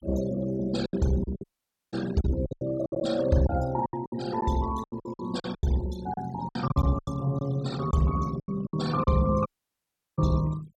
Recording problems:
denoising artefacts; signal-to-artefact ratio 17 dB
lost packets; 13% of the sound replaced, filled with silence
audio cutting out; at 1.5 s and at 9.5 s for 0.5 s

